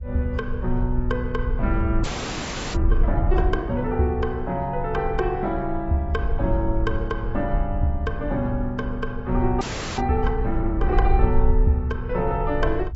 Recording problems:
lossy codec; AAC, log-spectral distance 2 dB, nothing above 7.8 kHz
low-frequency rumble; below 62 Hz, SNR 3 dB
frozen audio; at 2 s for 0.5 s and at 9.5 s

